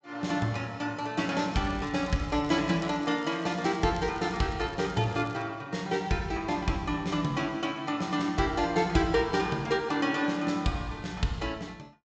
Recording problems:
treble missing; nothing above 8 kHz
crackle; from 1.5 to 5.5 s; loose cable, SNR 24 dB

